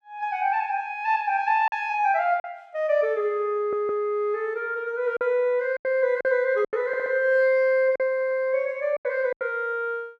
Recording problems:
lost packets; 6% of the sound replaced, filled with silence
stutter; at 3.5 s, at 7 s and at 8 s

